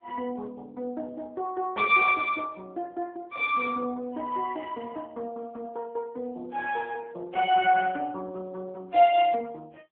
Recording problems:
telephone audio; 220 Hz to 3.5 kHz, AMR-NB

